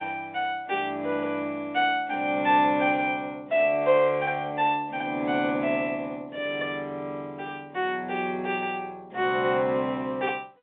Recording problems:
telephone audio; 220 Hz to 3.7 kHz, G.711

